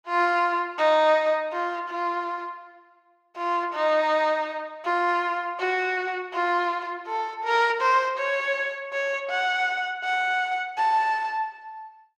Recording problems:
none

